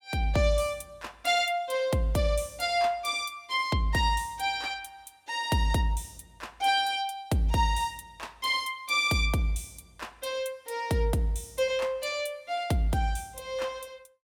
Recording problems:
none

